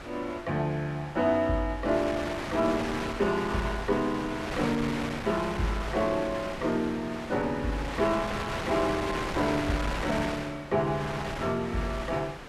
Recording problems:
wind noise; below 2.2 kHz, SNR 6 dB

